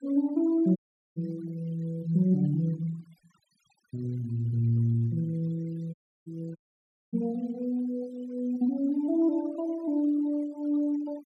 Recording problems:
denoising artefacts; signal-to-artefact ratio 26 dB
audio cutting out; at 1 s, at 6 s and at 6.5 s for 0.5 s

